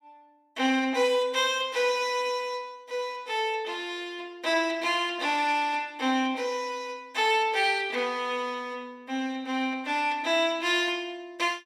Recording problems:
none

